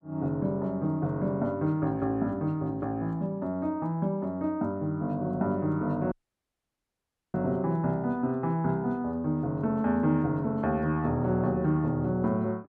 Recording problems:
dropout; at 6 s for 1 s

